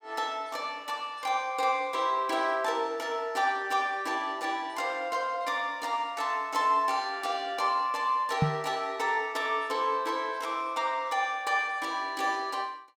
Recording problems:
microphone thump; at 8.5 s; peak +7 dB vs average level

